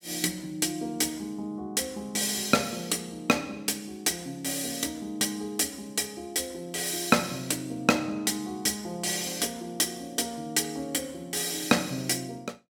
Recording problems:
none

